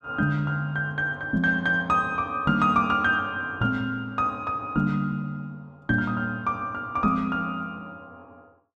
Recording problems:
none

